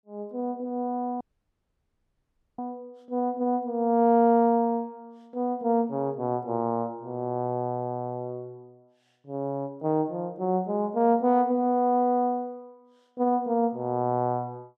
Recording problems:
dropout; at 1 s for 1.5 s

